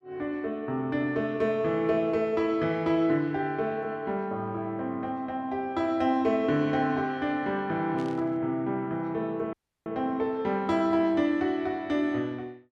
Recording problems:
static burst; at 8 s; peak -16 dB vs average level
dropout; at 9.5 s

